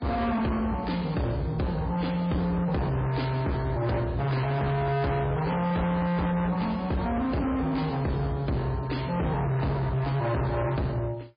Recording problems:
codec artefacts; MP3, log-spectral distance 2 dB, nothing above 4.5 kHz
distorted audio; hard clipping, signal-to-distortion ratio 7 dB

